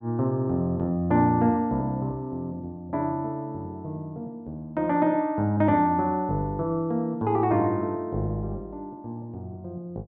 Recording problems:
none

